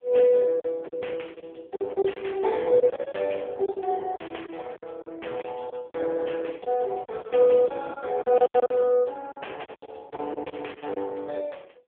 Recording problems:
telephone audio; 300 Hz to 3.5 kHz, AMR-NB
lost packets; 11% of the sound replaced, filled with silence

